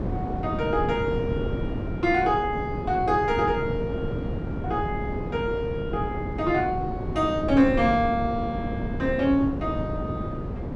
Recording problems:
wind noise; below 330 Hz, SNR 5 dB

